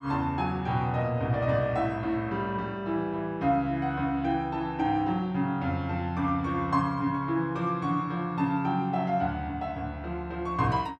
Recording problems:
none

